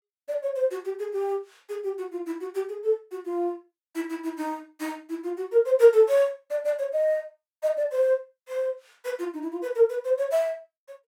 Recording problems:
none

